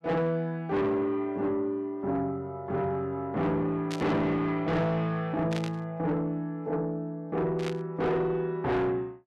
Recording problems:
distortion; soft clipping, signal-to-distortion ratio 8 dB
static burst; at 4 s, at 5.5 s and at 7.5 s; peak -4 dB vs average level

